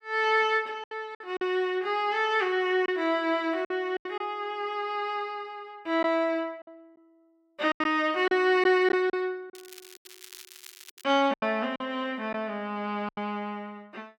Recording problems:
lost packets; 7% of the sound replaced, filled with silence
crackle; from 9.5 to 11 s; loose cable, SNR 19 dB

